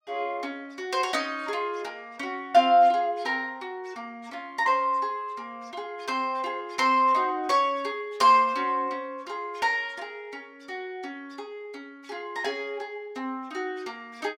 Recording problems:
none

